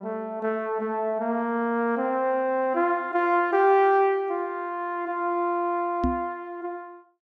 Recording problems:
microphone thump; at 6 s; peak +2 dB vs average level

